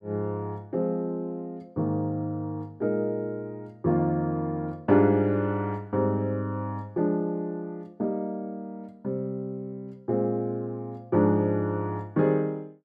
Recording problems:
none

